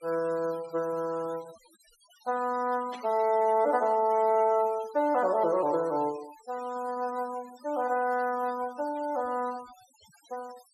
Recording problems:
noise reduction artefacts; signal-to-artefact ratio 23 dB
burst of static; at 3 s; peak -13 dB vs average level

